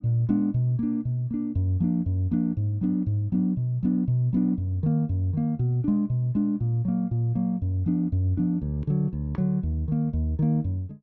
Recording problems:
none

